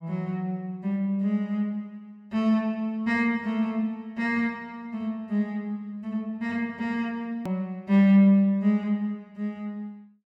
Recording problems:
edit click; at 7.5 s

